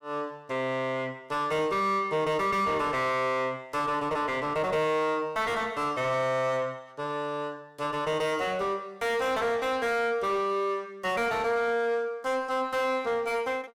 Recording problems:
distorted audio; soft clipping, signal-to-distortion ratio 6 dB

